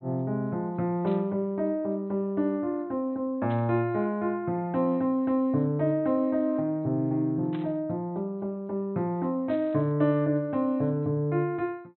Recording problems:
treble missing; nothing above 4 kHz
static burst; 4 times, first at 1 s; peak -14 dB vs average level

